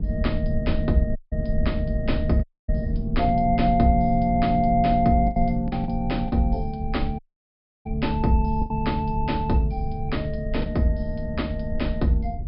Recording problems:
treble missing; nothing above 5.5 kHz
low-frequency rumble; below 82 Hz, SNR 7 dB
packet loss; 3% of the sound replaced, filled with the last packet
audio cutting out; at 1 s, at 2.5 s and at 7 s for 0.5 s

